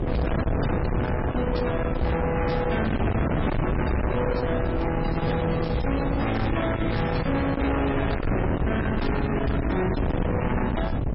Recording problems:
lossy codec; MP3, log-spectral distance 3 dB, nothing above 5.5 kHz
distortion; soft clipping, signal-to-distortion ratio 5 dB
wind noise; below 490 Hz, SNR 1 dB
crackle; from 5 to 7.5 s; loose cable, SNR 19 dB

